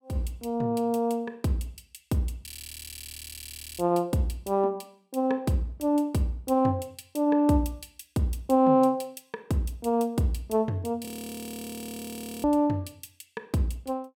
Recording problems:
audio freezing; at 2.5 s for 1.5 s and at 11 s for 1.5 s

